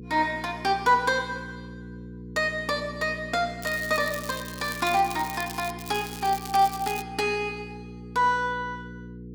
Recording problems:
electrical hum; 60 Hz, harmonics up to 480 Hz, SNR 14 dB
crackling; from 3.5 to 5.5 s and from 6 to 7 s; loose cable, SNR 13 dB

